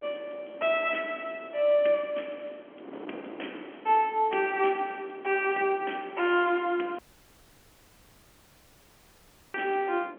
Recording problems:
phone line; 260 Hz to 3.4 kHz, G.711
wind noise; below 640 Hz, SNR 20 dB
dropout; at 7 s for 2.5 s

